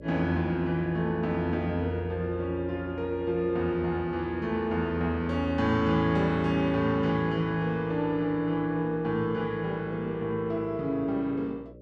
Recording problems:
hum; 60 Hz, harmonics up to 600 Hz, SNR 20 dB

